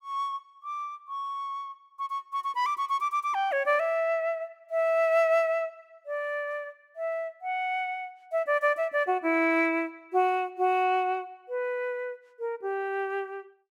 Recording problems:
none

